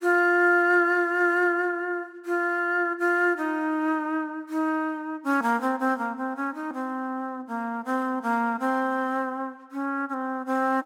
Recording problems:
none

